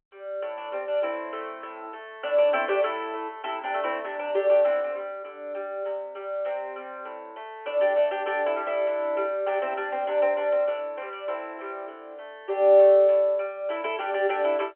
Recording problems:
telephone audio; 300 Hz to 3.2 kHz, G.711

